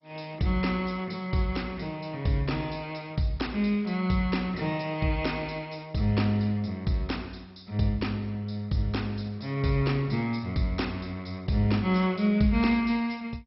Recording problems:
lossy compression; MP2, log-spectral distance 4 dB, nothing above 5.5 kHz

